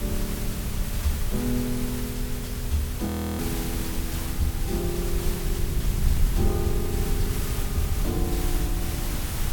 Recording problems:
background hiss; slope -2 dB per octave, SNR 3 dB
low-frequency rumble; below 80 Hz, SNR -1 dB
frozen audio; at 3 s

